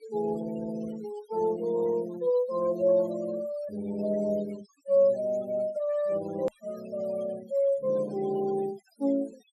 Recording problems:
noise reduction artefacts; signal-to-artefact ratio 21 dB
edit click; at 6.5 s

